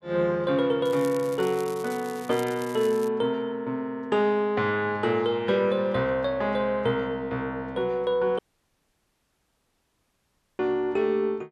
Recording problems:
crackle; from 1 to 3 s; loose cable, SNR 19 dB
audio cutting out; at 8.5 s for 2 s

